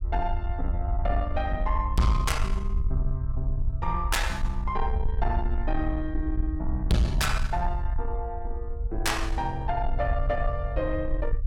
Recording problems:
distortion; soft clipping, signal-to-distortion ratio 11 dB
rumble; below 64 Hz, SNR 2 dB

